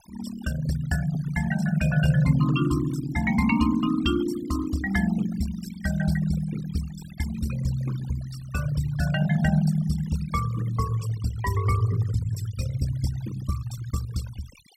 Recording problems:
denoising artefacts; signal-to-artefact ratio 15 dB

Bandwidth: 16 kHz